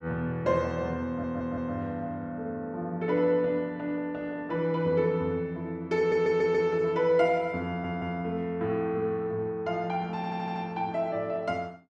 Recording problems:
stutter; 4 times, first at 1 s

